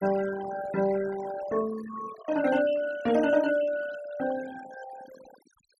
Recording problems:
noise reduction artefacts; signal-to-artefact ratio 14 dB

